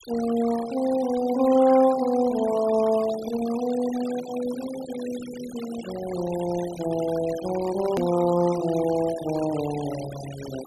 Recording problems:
denoising artefacts; signal-to-artefact ratio 15 dB
click at an edit; at 8 s

